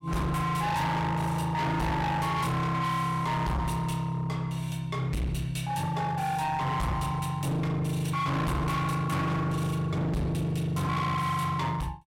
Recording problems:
distorted audio; hard clipping, signal-to-distortion ratio 6 dB

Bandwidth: 16.5 kHz